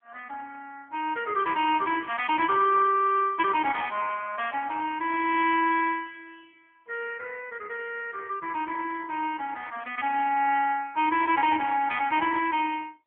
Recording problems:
telephone audio; 300 Hz to 3.3 kHz, AMR-NB

